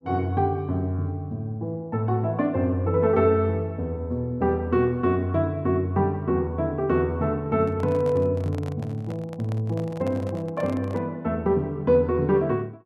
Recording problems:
handling noise; from 7.5 to 11 s; peak -9 dB vs average level

